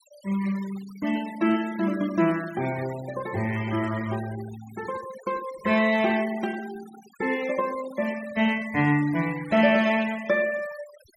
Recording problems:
noise reduction artefacts; signal-to-artefact ratio 18 dB

